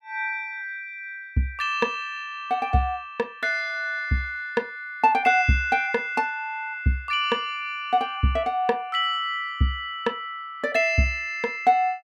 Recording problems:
none

